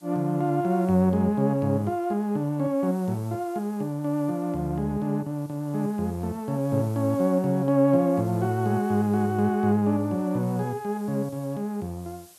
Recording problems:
hiss; SNR 27 dB

